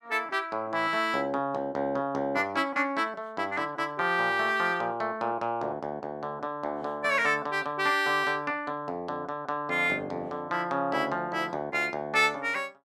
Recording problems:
none

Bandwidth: 14 kHz